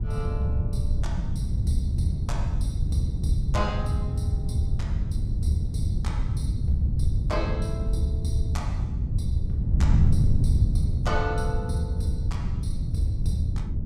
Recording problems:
wind on the microphone; below 120 Hz, SNR -6 dB

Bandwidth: 15.5 kHz